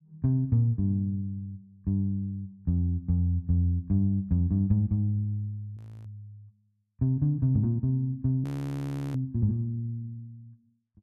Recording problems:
frozen audio; at 6 s and at 8.5 s for 0.5 s

